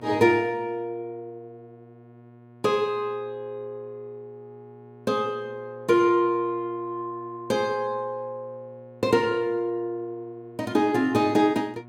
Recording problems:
hum; 60 Hz, harmonics up to 1.8 kHz, SNR 23 dB

